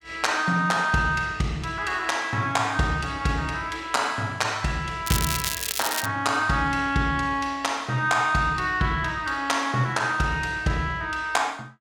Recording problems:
crackle; at 5 s; loose cable, SNR 3 dB

